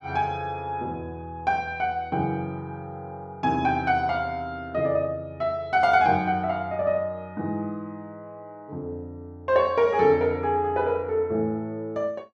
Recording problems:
none

